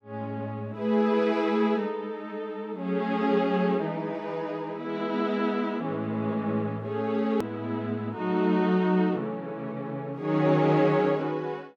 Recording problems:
click at an edit; at 7.5 s

